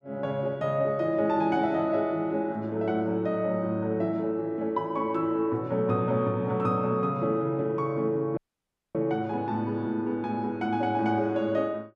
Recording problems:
audio cutting out; at 8.5 s for 0.5 s

